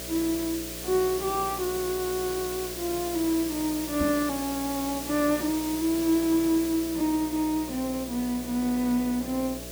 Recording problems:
hum; 60 Hz, harmonics up to 660 Hz, SNR 15 dB
hiss; slope +2 dB per octave, SNR 8 dB
microphone bump; at 4 s; peak 0 dB vs average level

